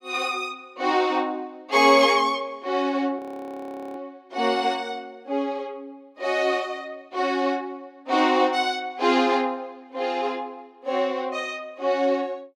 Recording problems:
audio freezing; at 3 s for 1 s

